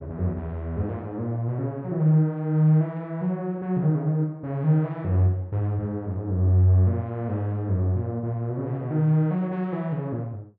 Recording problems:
none

